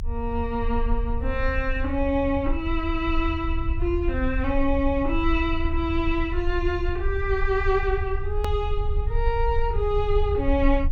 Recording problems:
low-frequency rumble; below 66 Hz, strongest tone 28 Hz, SNR 3 dB
hard cut with a click; at 8.5 s

